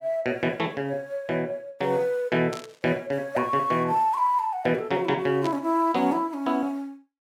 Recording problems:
burst of static; at 2.5 s and at 5.5 s; peak -7 dB vs average level

